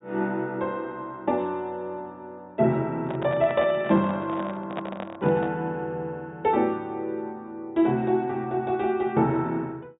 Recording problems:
low-pass filter; nothing above 4 kHz
handling noise; from 3 to 5.5 s; peak -2 dB vs average level

